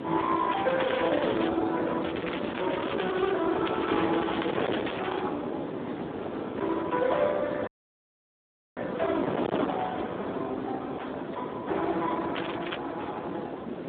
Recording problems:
telephone audio; 220 Hz to 4 kHz, Speex
distorted audio; hard clipping, signal-to-distortion ratio 8 dB
wind noise; below 740 Hz, SNR 4 dB
crackling; 4 times, first at 0.5 s; loose cable, SNR 11 dB
audio cutting out; at 7.5 s for 1 s

